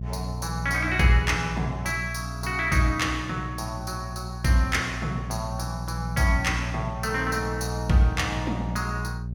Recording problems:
hum; 60 Hz, harmonics up to 420 Hz, SNR 7 dB

